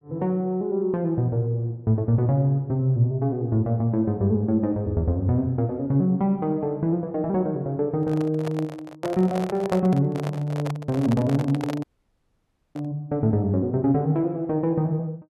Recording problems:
microphone handling noise; from 8 to 13 s; peak -3 dB vs average level
audio cutting out; at 12 s for 1 s

